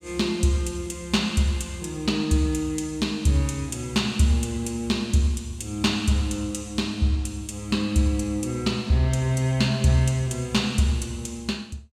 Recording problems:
none

